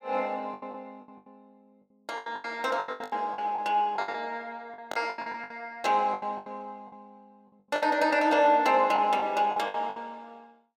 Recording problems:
packet loss; 17% of the sound replaced, filled with the last packet

